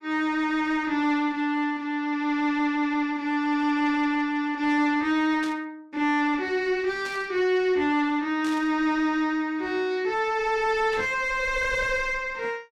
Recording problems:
distortion; soft clipping, signal-to-distortion ratio 8 dB
static burst; 4 times, first at 5.5 s; peak -10 dB vs average level

